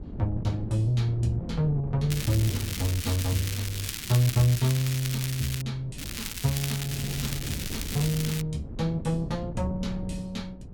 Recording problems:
wind on the microphone; below 220 Hz, SNR 10 dB
crackle; from 2 to 5.5 s and from 6 to 8.5 s; loose cable, SNR 6 dB

